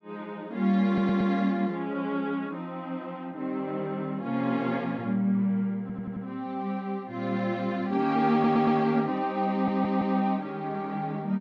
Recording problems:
stutter; 4 times, first at 1 s

